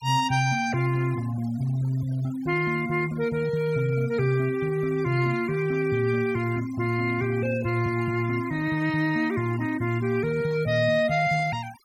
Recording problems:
noise reduction artefacts; signal-to-artefact ratio 20 dB

